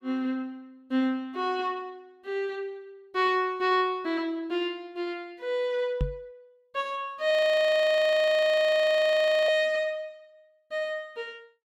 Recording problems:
microphone bump; at 6 s; peak +1 dB vs average level
frozen audio; at 7.5 s for 2 s

